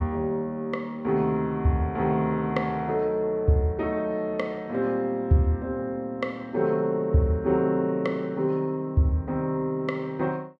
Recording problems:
none

